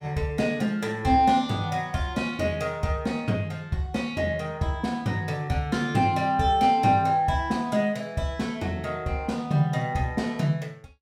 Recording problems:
none

